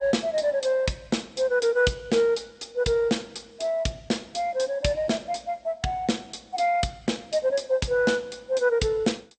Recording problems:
lossy codec; MP2, log-spectral distance 4 dB, nothing above 8.5 kHz

